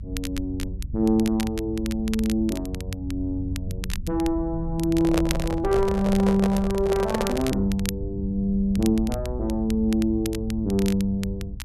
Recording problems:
low-frequency rumble; below 86 Hz, SNR 9 dB
crackling; vinyl, SNR 14 dB
microphone handling noise; from 5 to 7.5 s; peak +1 dB vs average level

